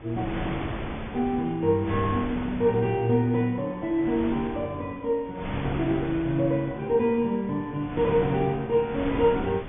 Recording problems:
treble cut off; nothing above 3.5 kHz
wind noise; below 980 Hz, SNR 10 dB

